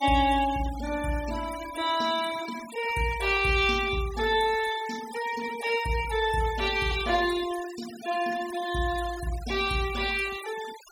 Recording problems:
noise reduction artefacts; signal-to-artefact ratio 14 dB

